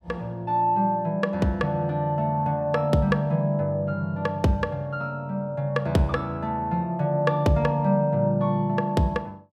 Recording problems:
none

